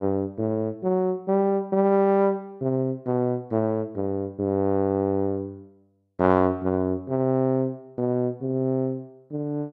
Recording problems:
none

